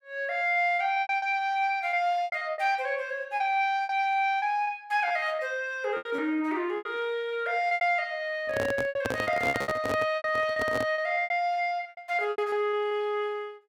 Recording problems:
packet loss; 13% of the sound replaced, filled with repeated pitch periods
microphone handling noise; from 8.5 to 11 s; peak 0 dB vs average level

